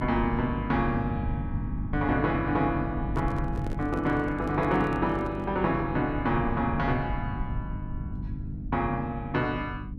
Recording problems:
hum; 50 Hz, harmonics up to 300 Hz, SNR 8 dB
low-frequency rumble; below 130 Hz, SNR 9 dB
handling noise; from 3 to 5.5 s; peak -7 dB vs average level

